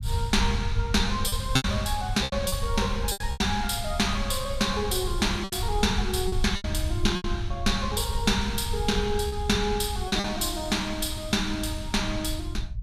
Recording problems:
low-frequency rumble; below 90 Hz, SNR 6 dB
lost packets; 6% of the sound replaced, filled with repeated pitch periods

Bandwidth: 14.5 kHz